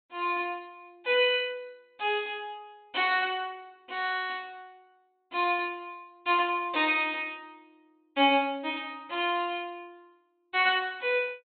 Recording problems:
low-pass filter; nothing above 4 kHz

